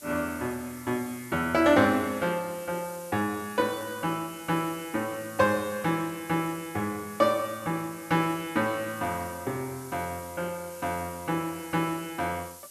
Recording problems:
hiss; SNR 16 dB

